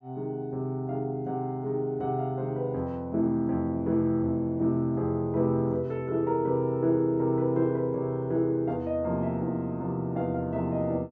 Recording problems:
none

